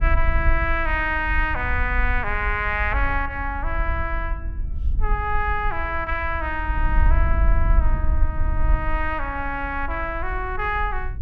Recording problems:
wind noise; below 58 Hz, SNR 2 dB

